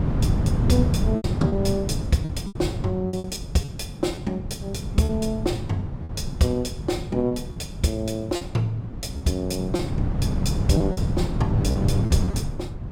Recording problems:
wind on the microphone; below 180 Hz, SNR 1 dB
lost packets; 7% of the sound replaced, filled with repeated pitch periods

